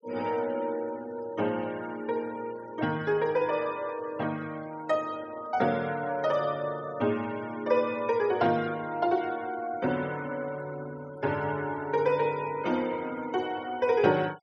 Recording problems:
denoising artefacts; signal-to-artefact ratio 22 dB

